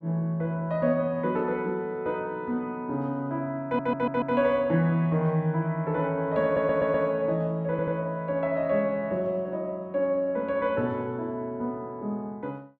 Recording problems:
audio stuttering; at 3.5 s, at 6.5 s and at 7.5 s

